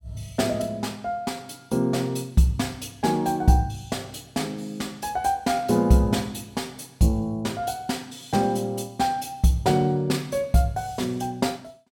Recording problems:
none

